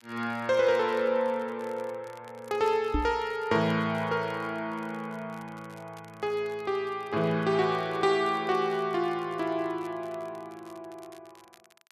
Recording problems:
crackle; vinyl, SNR 28 dB
knock on the microphone; at 3 s; peak +3 dB vs average level

